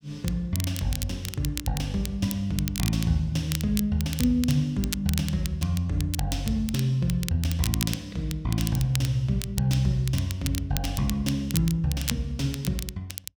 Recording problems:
crackling; vinyl, SNR 9 dB

